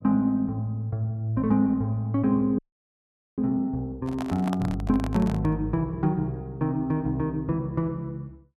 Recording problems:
frozen audio; at 2.5 s for 1 s
handling noise; from 4 to 5.5 s; peak -3 dB vs average level

